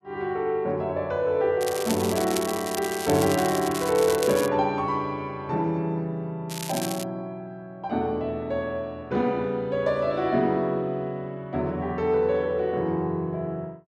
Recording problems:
crackle; from 1.5 to 4.5 s and at 6.5 s; loose cable, SNR 8 dB

